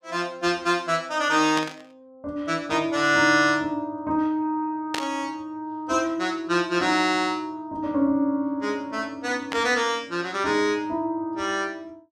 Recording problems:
static burst; at 1.5 s, at 5 s and at 9.5 s; peak 0 dB vs average level

